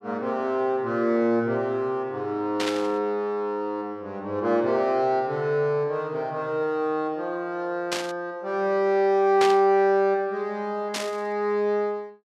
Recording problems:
static burst; 4 times, first at 2.5 s; peak +1 dB vs average level

